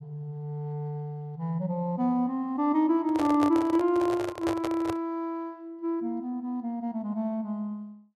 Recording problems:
handling noise; from 3 to 5 s; peak 0 dB vs average level

